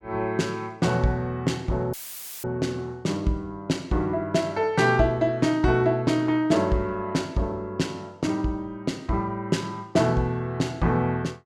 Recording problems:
audio cutting out; at 2 s for 0.5 s; filled with static

